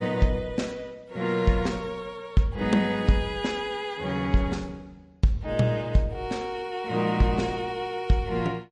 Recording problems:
lossy compression; MP3, log-spectral distance 2 dB, nothing above 10.4 kHz

